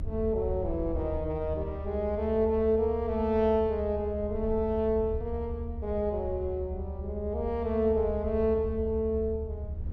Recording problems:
rumble; below 76 Hz, strongest tone 74 Hz, SNR 8 dB

